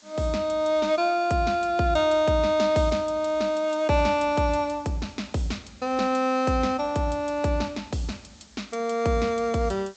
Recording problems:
treble missing; nothing above 8 kHz
background hiss; SNR 28 dB

